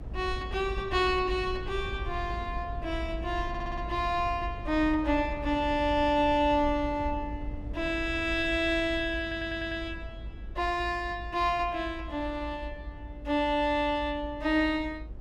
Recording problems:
low-frequency rumble; below 82 Hz, SNR 11 dB
stutter; at 3.5 s and at 9 s

